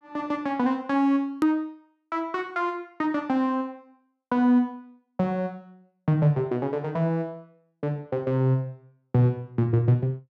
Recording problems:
edit click; at 1.5 s

